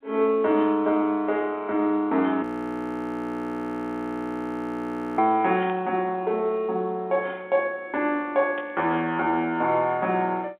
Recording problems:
telephone audio; 220 Hz to 3.6 kHz, G.711
audio freezing; at 2.5 s for 2.5 s
burst of static; at 5.5 s and at 8.5 s; peak -12 dB vs average level

